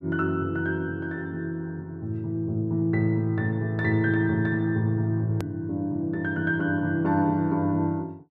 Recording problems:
hard cut with a click; at 5.5 s

